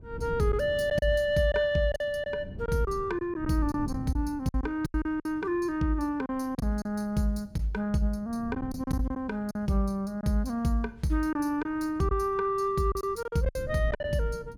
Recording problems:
wind noise; below 180 Hz, SNR 16 dB
packet loss; 8% of the sound replaced, filled with silence

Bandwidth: 17.5 kHz